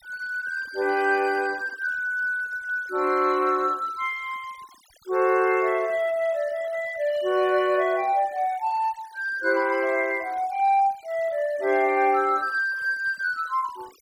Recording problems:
denoising artefacts; signal-to-artefact ratio 24 dB

